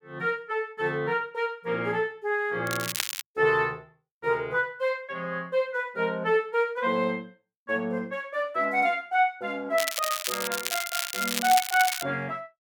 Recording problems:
crackling; at 2.5 s and from 10 to 12 s; loose cable, SNR 3 dB

